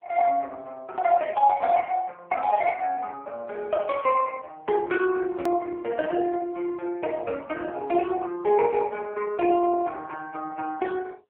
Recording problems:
telephone audio; 300 Hz to 3.3 kHz, AMR-NB
edit click; at 5.5 s

